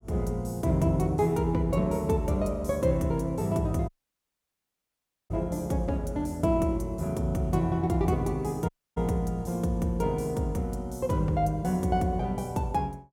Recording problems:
audio cutting out; at 4 s for 1.5 s and at 8.5 s

